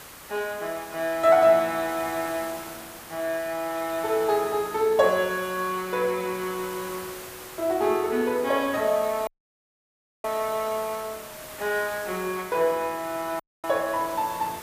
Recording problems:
hiss; slope -2 dB per octave, SNR 14 dB
audio cutting out; at 9.5 s for 1 s and at 13 s

